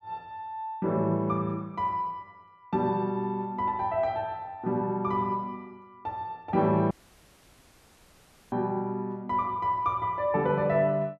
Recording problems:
dropout; at 7 s for 1.5 s

